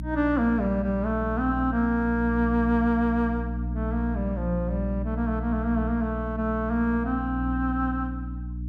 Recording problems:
hum; 60 Hz, harmonics up to 300 Hz, SNR 6 dB

